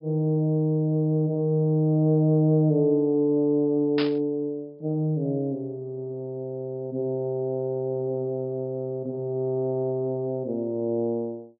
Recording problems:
treble cut off; nothing above 5.5 kHz
static burst; at 4 s; peak -2 dB vs average level

